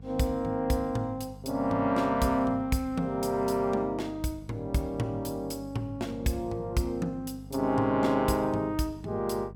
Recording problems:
electrical hum; 50 Hz, harmonics up to 700 Hz, SNR 17 dB

